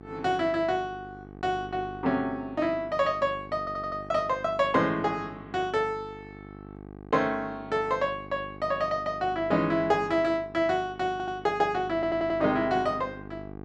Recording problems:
hum; 50 Hz, harmonics up to 1.6 kHz, SNR 17 dB
stutter; at 3.5 s, at 11 s and at 12 s

